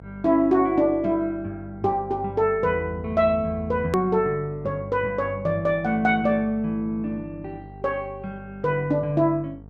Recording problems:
hum; 50 Hz, harmonics up to 950 Hz, SNR 19 dB
hard cut with a click; at 4 s

